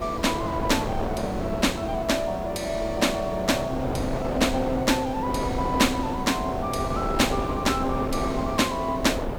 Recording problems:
background hiss; SNR 27 dB
wind noise; below 630 Hz, SNR 5 dB

